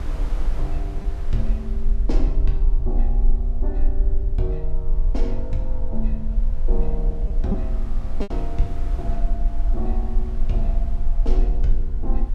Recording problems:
rumble; below 40 Hz, strongest tone 18 Hz, SNR -7 dB
wind noise; below 930 Hz, SNR 12 dB
lost packets; 1.1% of the sound replaced, filled with repeated pitch periods

